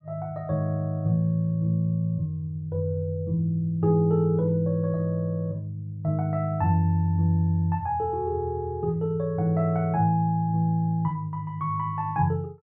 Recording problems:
none

